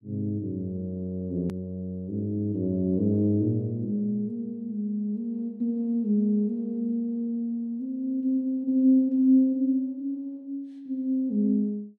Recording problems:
hard cut with a click; at 1.5 s

